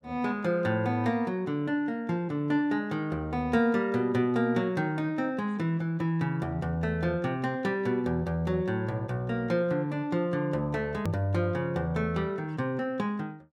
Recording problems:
click at an edit; at 11 s

